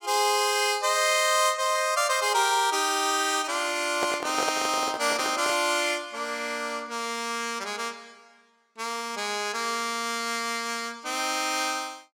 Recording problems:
microphone handling noise; from 4 to 5.5 s; peak -1 dB vs average level

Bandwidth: 17 kHz